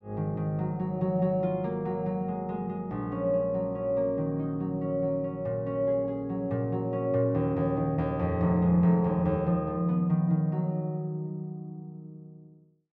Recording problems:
none

